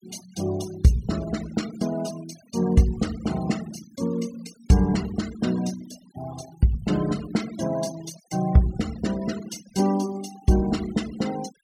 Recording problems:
noise reduction artefacts; signal-to-artefact ratio 17 dB

